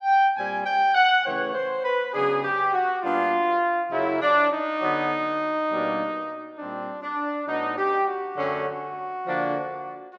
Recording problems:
none

